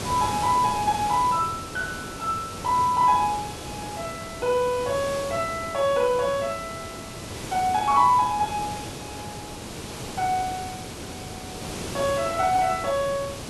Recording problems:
hiss; SNR 10 dB

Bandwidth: 12 kHz